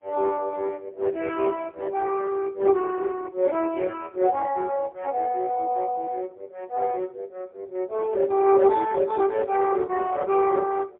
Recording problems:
telephone audio; 320 Hz to 2.6 kHz, AMR-NB, then MP3

